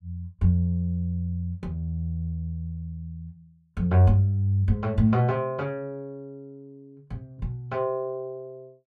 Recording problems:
none

